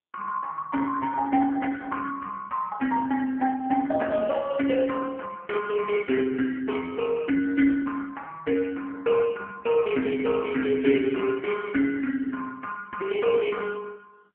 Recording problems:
phone line; 220 Hz to 2.5 kHz, AMR-NB

